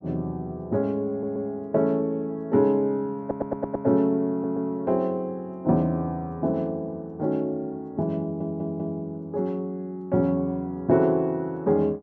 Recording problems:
stutter; 4 times, first at 1 s

